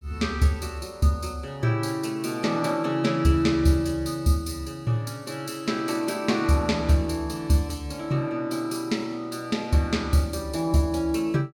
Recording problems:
none

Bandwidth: 17 kHz